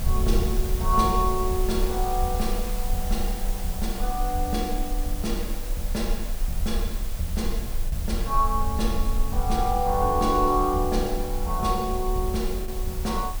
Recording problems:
background hiss; SNR 10 dB
rumble; below 44 Hz, SNR 4 dB
lost packets; 0.5% of the sound replaced, filled with the last packet

